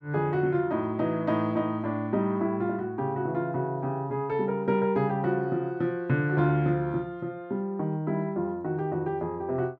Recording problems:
none

